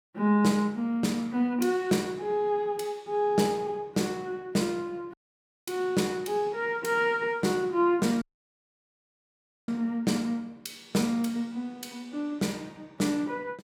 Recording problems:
audio cutting out; at 5 s for 0.5 s and at 8 s for 1.5 s

